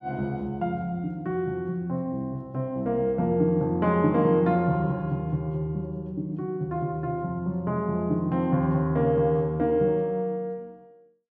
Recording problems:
none

